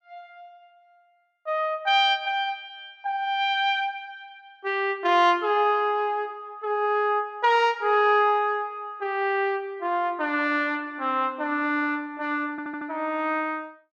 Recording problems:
stutter; at 13 s

